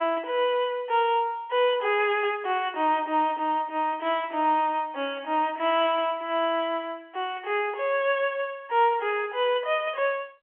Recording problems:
telephone audio; 320 Hz to 3.4 kHz, G.711

